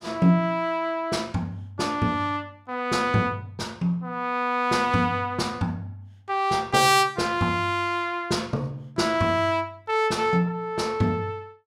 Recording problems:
none

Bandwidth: 16.5 kHz